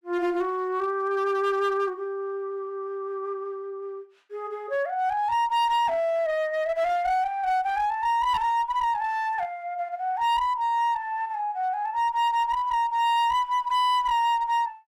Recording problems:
distorted audio; hard clipping, uneven, signal-to-distortion ratio 11 dB

